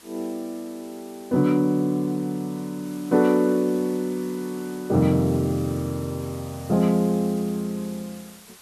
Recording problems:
background hiss; slope 0 dB per octave, SNR 21 dB

